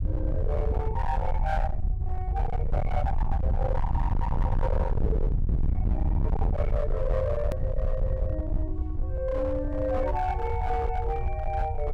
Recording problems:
distortion; hard clipping, signal-to-distortion ratio 6 dB
low-frequency rumble; below 86 Hz, SNR -3 dB
edit click; at 7.5 s

